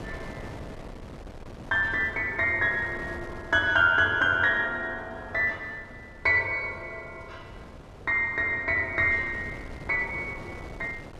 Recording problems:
wind on the microphone; below 590 Hz, SNR 19 dB

